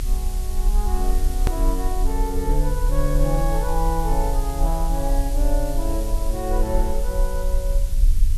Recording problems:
background hiss; slope +2 dB per octave, SNR 11 dB
rumble; below 42 Hz, strongest tone 32 Hz, SNR -3 dB
edit click; at 1.5 s

